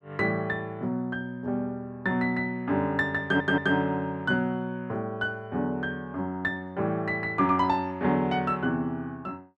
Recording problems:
audio stuttering; at 3 s

